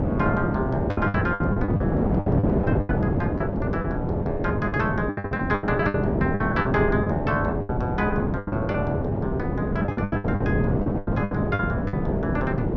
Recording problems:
wind on the microphone; below 390 Hz, SNR -3 dB
packet loss; 15% of the sound replaced, filled with the last packet

